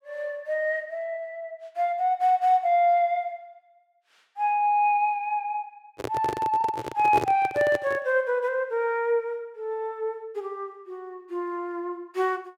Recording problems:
microphone handling noise; from 6 to 8 s; peak +2 dB vs average level

